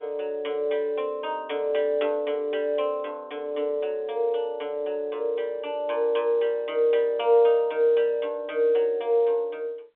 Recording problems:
telephone audio; 320 Hz to 3.7 kHz, G.711

